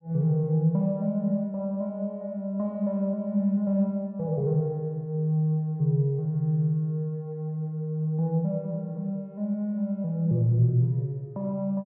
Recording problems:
none

